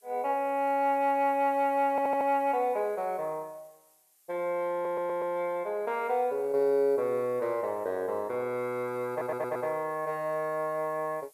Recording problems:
hiss; slope +2 dB per octave, SNR 30 dB
stutter; at 2 s, at 4.5 s and at 9 s

